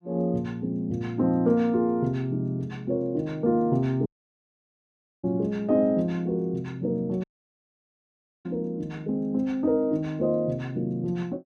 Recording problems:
dropout; at 4 s for 1 s and at 7 s for 1 s

